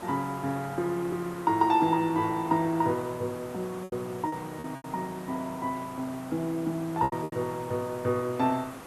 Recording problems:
hiss; SNR 15 dB
packet loss; 5% of the sound replaced, filled with repeated pitch periods

